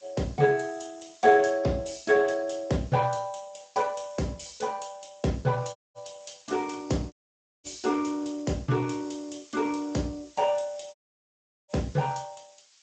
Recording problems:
lossy compression; Speex, log-spectral distance 12 dB, nothing above 7.8 kHz
background hiss; slope +5 dB per octave, SNR 27 dB
dropout; at 6 s, at 7 s for 0.5 s and at 11 s for 0.5 s

